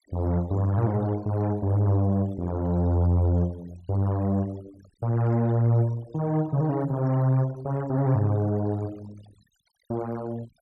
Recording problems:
denoising artefacts; signal-to-artefact ratio 22 dB

